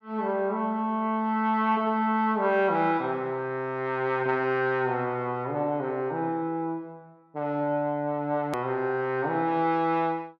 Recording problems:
click at an edit; at 8.5 s

